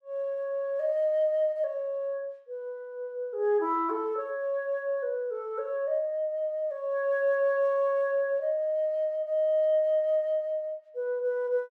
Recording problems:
none

